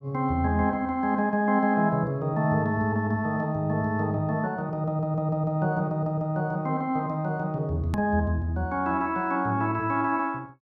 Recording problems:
click at an edit; at 8 s

